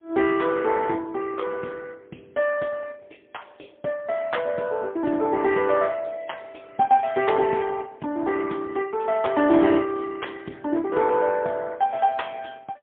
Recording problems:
phone line; 150 Hz to 3.4 kHz, AMR-NB, then MP3

